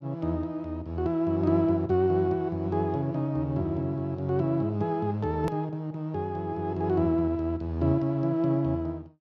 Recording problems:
click at an edit; at 5.5 s

